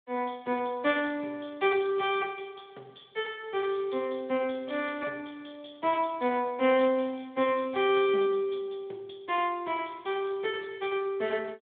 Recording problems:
telephone audio; 260 Hz to 3.5 kHz, Speex

